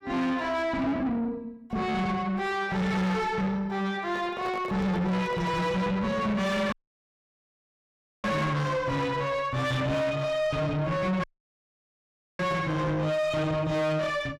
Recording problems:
distorted audio; soft clipping, signal-to-distortion ratio 7 dB
microphone handling noise; from 4 to 5.5 s; peak -6 dB vs average level
audio cutting out; at 6.5 s for 1.5 s and at 11 s for 1 s

